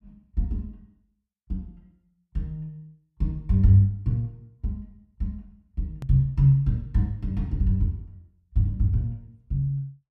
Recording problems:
hard cut with a click; at 6 s

